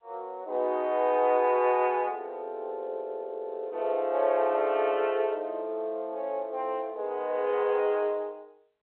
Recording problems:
phone line; 340 Hz to 3.3 kHz, G.711

